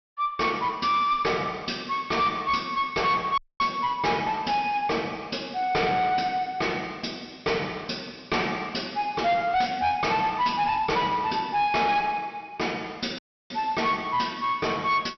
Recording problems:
low-pass filter; nothing above 5.6 kHz
distortion; hard clipping, uneven, signal-to-distortion ratio 11 dB
dropout; at 3.5 s and at 13 s

